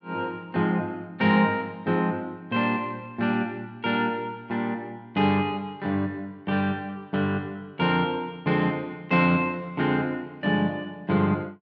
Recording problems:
none

